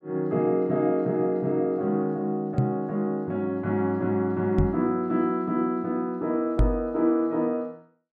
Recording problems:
microphone thump; at 2.5 s, at 4.5 s and at 6.5 s; peak +7 dB vs average level

